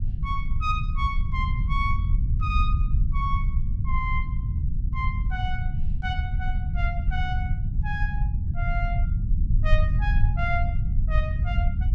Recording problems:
low-frequency rumble; below 86 Hz, SNR -6 dB

